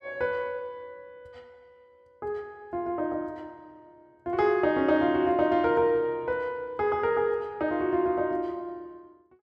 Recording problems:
none

